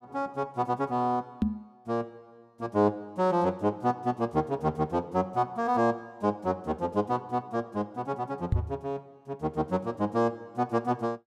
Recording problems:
microphone thump; at 1.5 s and at 8.5 s; peak +7 dB vs average level

